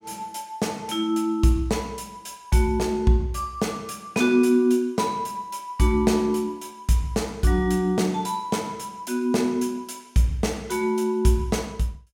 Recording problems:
none

